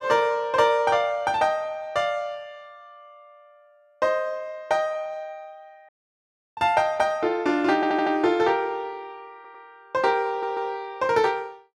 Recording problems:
audio cutting out; at 6 s for 0.5 s
stutter; at 8 s, at 9.5 s and at 10 s

